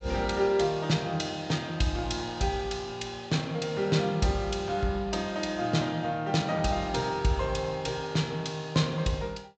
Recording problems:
low-pass filter; nothing above 8 kHz

